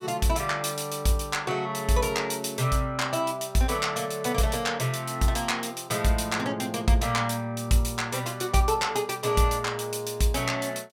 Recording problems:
none

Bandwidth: 17 kHz